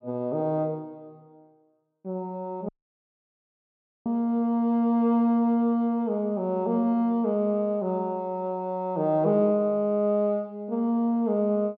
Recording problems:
dropout; at 2.5 s for 1.5 s

